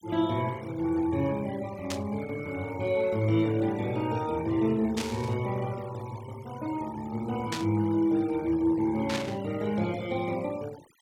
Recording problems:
noise reduction artefacts; signal-to-artefact ratio 20 dB
burst of static; 4 times, first at 2 s; peak 0 dB vs average level

